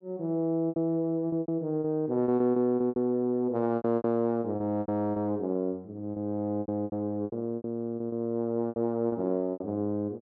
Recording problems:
lost packets; 15% of the sound replaced, filled with repeated pitch periods

